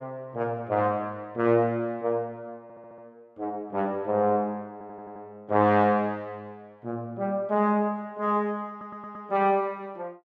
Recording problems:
audio stuttering; at 2.5 s, at 4.5 s and at 8.5 s

